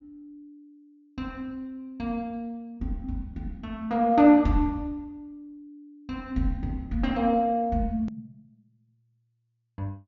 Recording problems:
treble missing; nothing above 7 kHz
edit click; at 8 s

